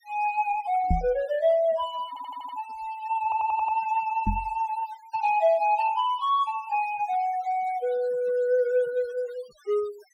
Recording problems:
denoising artefacts; signal-to-artefact ratio 23 dB
knock on the microphone; at 1 s and at 4.5 s; peak +4 dB vs average level
stutter; at 2 s and at 3 s

